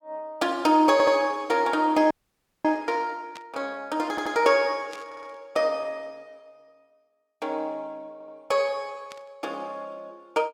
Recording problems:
stutter; 4 times, first at 1 s
frozen audio; at 2 s for 0.5 s
static burst; at 3.5 s, at 5 s and at 9 s; peak -13 dB vs average level

